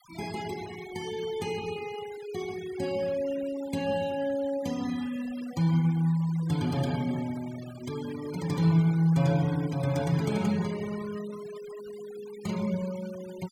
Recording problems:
noise reduction artefacts; signal-to-artefact ratio 18 dB

